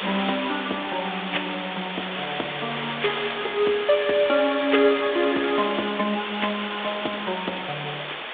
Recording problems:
telephone audio; 280 Hz to 3.6 kHz, G.726
hiss; SNR 5 dB
wind on the microphone; below 750 Hz, SNR 23 dB

